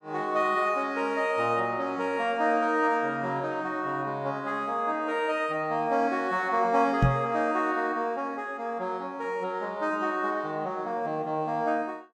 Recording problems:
microphone bump; at 7 s; peak +8 dB vs average level

